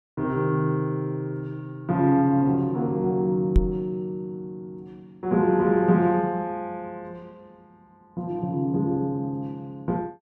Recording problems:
microphone thump; at 3.5 s; peak +8 dB vs average level

